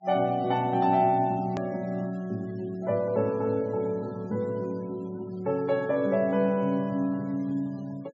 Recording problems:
low-pass filter; nothing above 7.4 kHz
noise reduction artefacts; signal-to-artefact ratio 28 dB
hard cut with a click; at 1.5 s

